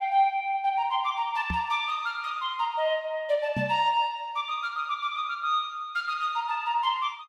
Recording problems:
knock on the microphone; at 1.5 s and at 3.5 s; peak 0 dB vs average level

